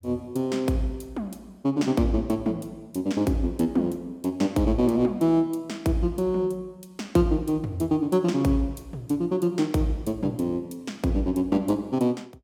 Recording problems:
none

